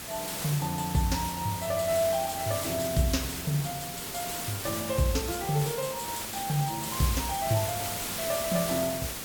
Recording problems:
background hiss; slope -2 dB per octave, SNR 4 dB
crackling; vinyl, SNR 26 dB

